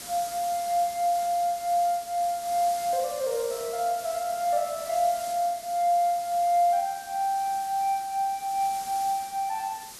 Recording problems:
hiss; SNR 13 dB

